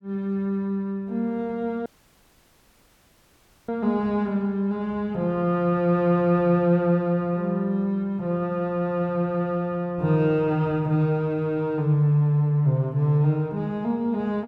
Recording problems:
dropout; at 2 s for 2 s

